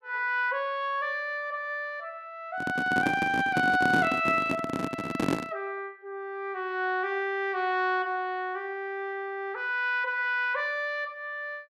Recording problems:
handling noise; from 2.5 to 5.5 s; peak +5 dB vs average level

